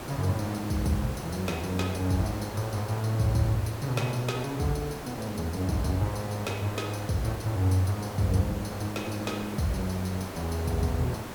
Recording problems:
hiss; slope -6 dB per octave, SNR 9 dB

